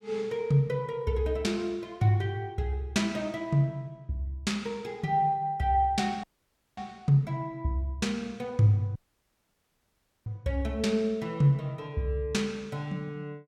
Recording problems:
audio cutting out; at 6 s for 0.5 s and at 9 s for 1.5 s

